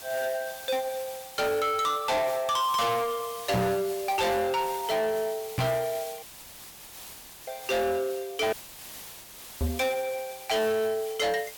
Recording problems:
distortion; soft clipping, signal-to-distortion ratio 7 dB
background hiss; slope 0 dB per octave, SNR 14 dB
microphone bump; at 3.5 s, at 5.5 s and at 9.5 s; peak +6 dB vs average level
audio cutting out; at 6 s for 1 s and at 8.5 s for 1 s

